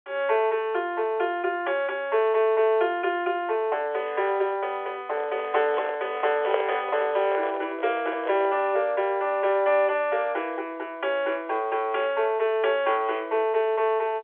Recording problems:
phone line; 340 Hz to 3.6 kHz, G.711
handling noise; from 5 to 8.5 s; peak +3 dB vs average level

